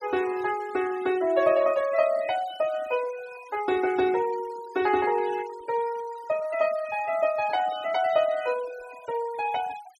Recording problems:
noise reduction artefacts; signal-to-artefact ratio 19 dB

